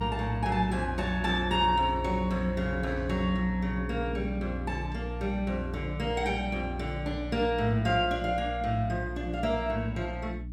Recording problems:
hum; 60 Hz, harmonics up to 300 Hz, SNR 7 dB

